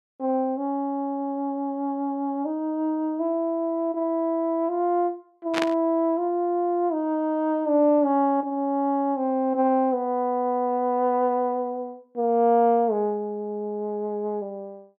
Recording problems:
static burst; at 5.5 s; peak +1 dB vs average level

